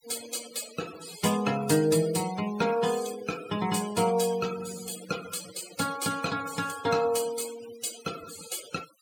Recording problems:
noise reduction artefacts; signal-to-artefact ratio 13 dB

